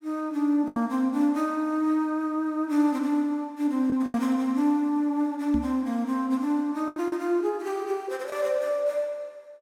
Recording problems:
packet loss; 3% of the sound replaced, filled with the last packet
microphone bump; at 5.5 s; peak 0 dB vs average level

